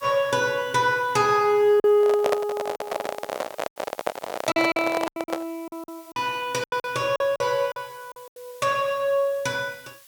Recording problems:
background hiss; slope +5 dB per octave, SNR 26 dB
packet loss; 9% of the sound replaced, filled with silence
microphone handling noise; from 2 to 5.5 s; peak +3 dB vs average level

